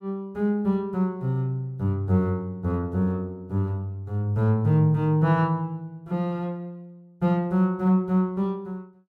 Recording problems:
none

